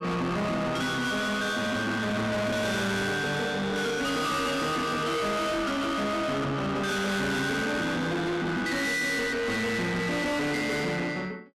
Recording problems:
distorted audio; soft clipping, signal-to-distortion ratio 6 dB

